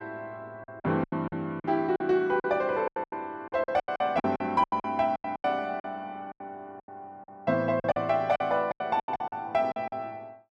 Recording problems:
lost packets; 17% of the sound replaced, filled with silence

